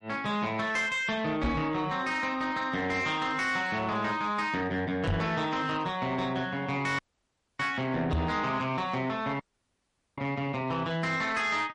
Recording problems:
lossy codec; MP3, log-spectral distance 2 dB, nothing above 10.4 kHz
distortion; soft clipping, signal-to-distortion ratio 10 dB
knock on the microphone; at 1.5 s, at 5 s and at 8 s; peak +4 dB vs average level
audio cutting out; at 7 s for 0.5 s and at 9.5 s for 1 s

